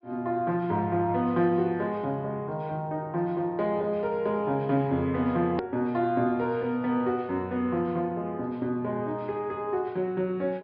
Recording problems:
low-pass filter; nothing above 5.5 kHz
click at an edit; at 5.5 s

